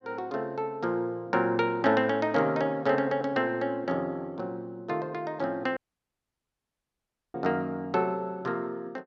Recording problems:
audio cutting out; at 6 s for 1.5 s

